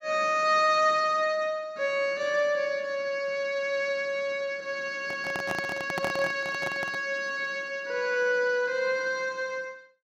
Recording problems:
microphone handling noise; from 5 to 7 s; peak -2 dB vs average level

